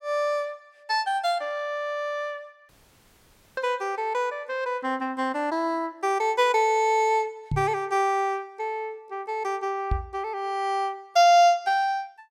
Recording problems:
audio cutting out; at 2.5 s for 1 s
microphone bump; at 7.5 s and at 10 s; peak +2 dB vs average level

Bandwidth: 16 kHz